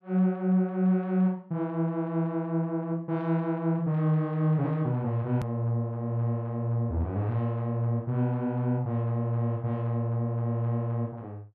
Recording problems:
edit click; at 5.5 s

